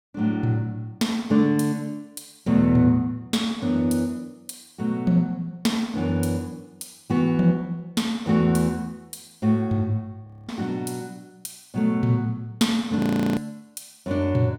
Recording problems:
audio freezing; at 10 s and at 13 s

